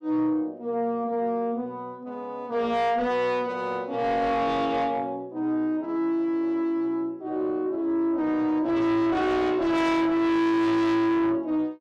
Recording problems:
distortion; soft clipping, signal-to-distortion ratio 6 dB

